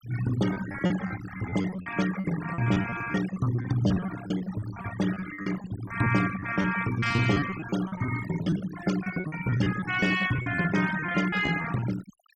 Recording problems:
denoising artefacts; signal-to-artefact ratio 10 dB
lost packets; 16% of the sound replaced, filled with repeated pitch periods

